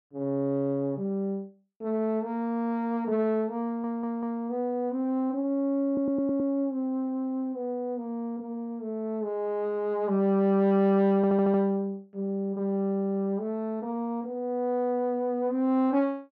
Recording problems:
stutter; at 3.5 s, at 6 s and at 11 s

